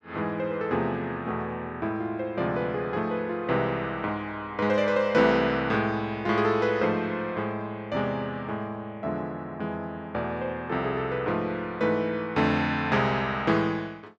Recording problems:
none

